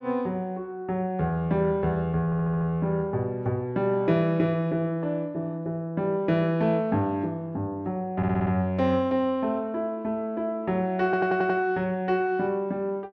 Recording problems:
stutter; at 2.5 s, at 8 s and at 11 s

